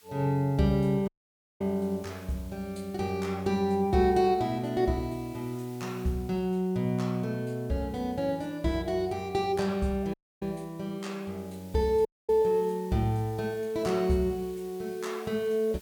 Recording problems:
background hiss; slope +1 dB per octave, SNR 25 dB
audio cutting out; at 1 s for 0.5 s, at 10 s and at 12 s

